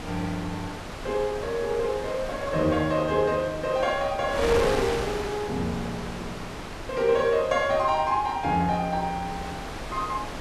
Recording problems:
wind noise; below 1.8 kHz, SNR 9 dB

